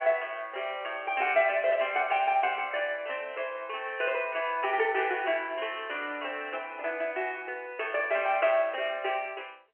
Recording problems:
telephone audio; 320 Hz to 3.2 kHz, G.711

